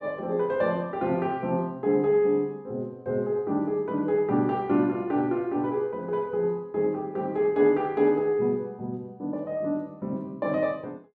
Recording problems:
none

